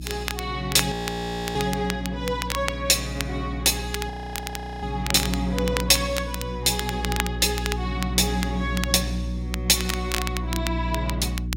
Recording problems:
hum; 60 Hz, harmonics up to 360 Hz, SNR 7 dB
crackling; vinyl, SNR 9 dB
audio freezing; at 1 s for 0.5 s and at 4 s for 0.5 s

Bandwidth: 16 kHz